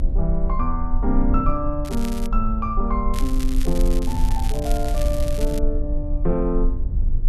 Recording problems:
low-frequency rumble; below 40 Hz, strongest tone 24 Hz, SNR 1 dB
wind noise; below 88 Hz, SNR 6 dB
crackling; at 2 s and from 3 to 5.5 s; loose cable, SNR 12 dB

